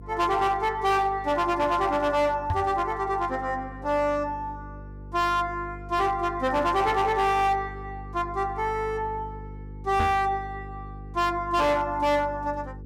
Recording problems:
distortion; hard clipping, signal-to-distortion ratio 11 dB
hum; 50 Hz, harmonics up to 500 Hz, SNR 16 dB
microphone thump; at 2.5 s and at 10 s; peak +1 dB vs average level

